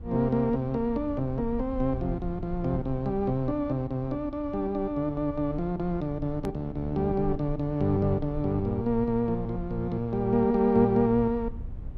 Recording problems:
rumble; below 82 Hz, SNR 14 dB
hard cut with a click; at 6.5 s

